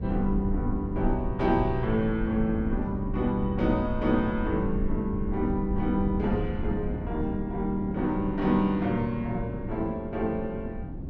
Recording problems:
low-frequency rumble; below 74 Hz, SNR 9 dB
wind on the microphone; below 270 Hz, SNR 9 dB

